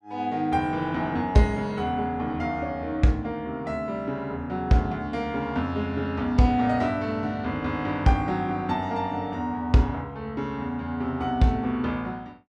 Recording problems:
none

